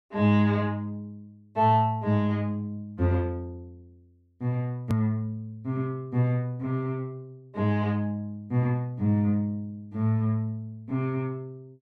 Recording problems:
hard cut with a click; at 5 s

